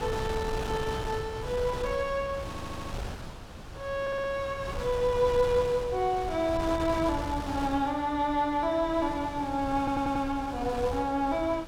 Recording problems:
wind noise; below 820 Hz, SNR 9 dB
stutter; at 2.5 s, at 4 s and at 10 s

